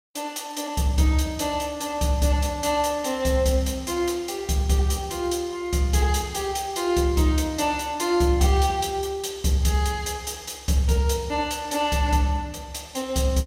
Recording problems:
none

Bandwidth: 16.5 kHz